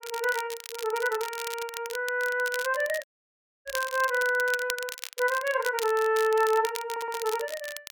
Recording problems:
crackling; vinyl, SNR 11 dB
dropout; at 3 s for 0.5 s
microphone thump; at 3.5 s; peak -34 dB vs average level
stutter; at 7 s

